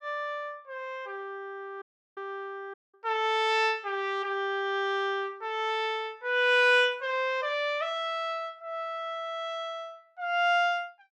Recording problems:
dropout; at 2 s and at 2.5 s

